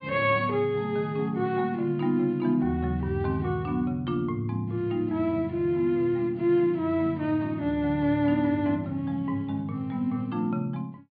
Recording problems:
treble missing; nothing above 4.7 kHz

